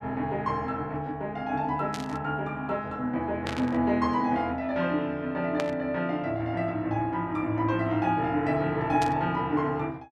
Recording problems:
static burst; 4 times, first at 2 s; peak -2 dB vs average level

